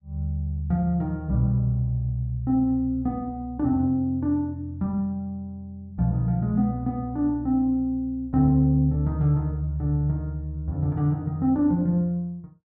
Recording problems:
none

